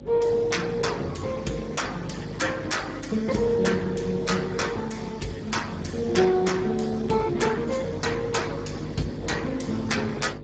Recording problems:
lossy codec; AAC, then Speex, log-spectral distance 5 dB, nothing above 7.6 kHz
mains hum; 50 Hz, harmonics up to 600 Hz, SNR 12 dB

